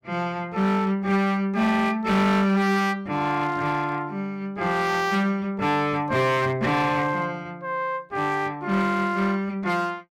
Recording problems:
distortion; hard clipping, signal-to-distortion ratio 11 dB

